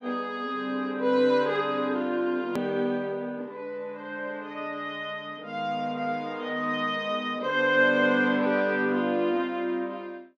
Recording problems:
edit click; at 2.5 s

